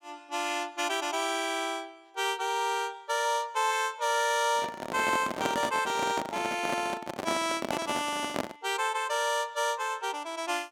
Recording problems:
microphone handling noise; from 4.5 to 8.5 s; peak +3 dB vs average level

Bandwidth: 17 kHz